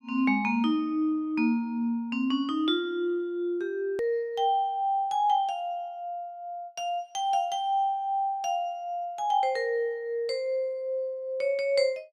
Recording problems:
hard cut with a click; at 4 s

